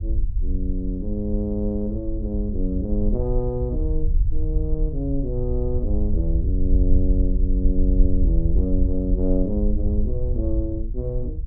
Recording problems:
low-frequency rumble; below 60 Hz, SNR -2 dB

